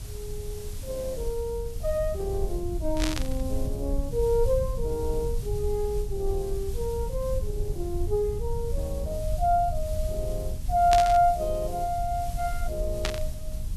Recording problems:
hiss; SNR 18 dB
low-frequency rumble; below 70 Hz, SNR 5 dB
static burst; at 3 s, at 11 s and at 13 s; peak +4 dB vs average level

